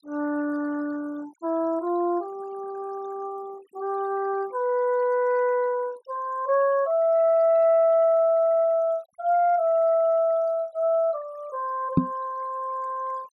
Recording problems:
denoising artefacts; signal-to-artefact ratio 28 dB
microphone bump; at 12 s; peak +8 dB vs average level

